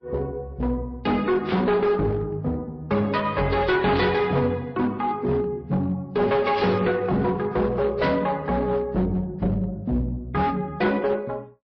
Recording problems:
treble cut off; nothing above 5.5 kHz
codec artefacts; MP3, then AAC, log-spectral distance 2 dB
distortion; hard clipping, uneven, signal-to-distortion ratio 10 dB
burst of static; 4 times, first at 1.5 s; peak -6 dB vs average level

